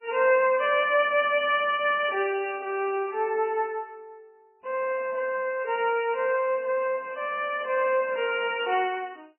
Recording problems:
lossy codec; MP3, log-spectral distance 4 dB, nothing above 2.6 kHz

